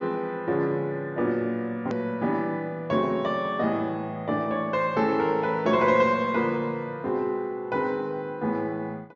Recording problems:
treble cut off; nothing above 7.3 kHz
hard cut with a click; at 2 s

